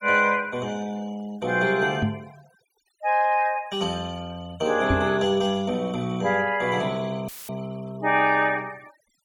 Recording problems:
denoising artefacts; signal-to-artefact ratio 24 dB
microphone thump; at 2 s and at 5 s; peak +3 dB vs average level
audio cutting out; at 7.5 s; filled with static

